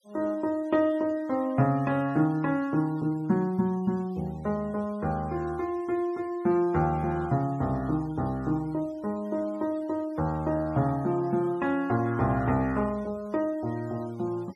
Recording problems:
denoising artefacts; signal-to-artefact ratio 26 dB

